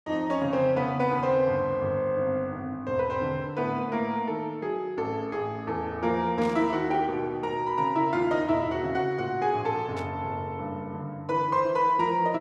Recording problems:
static burst; at 6.5 s and at 10 s; peak -13 dB vs average level

